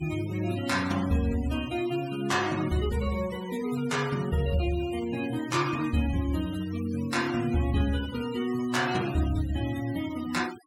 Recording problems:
denoising artefacts; signal-to-artefact ratio 16 dB

